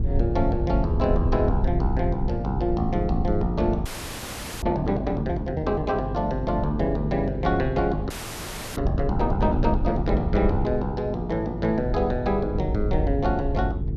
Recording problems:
hum; 50 Hz, harmonics up to 450 Hz, SNR 7 dB
wind on the microphone; below 88 Hz, SNR 4 dB
frozen audio; at 4 s for 1 s and at 8 s for 0.5 s

